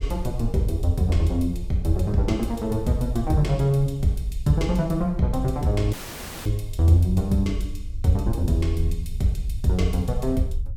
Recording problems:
low-frequency rumble; below 62 Hz, SNR 10 dB
audio cutting out; at 6 s for 0.5 s

